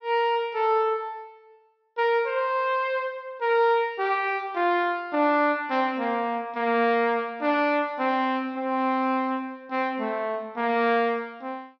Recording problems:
treble missing; nothing above 6.2 kHz

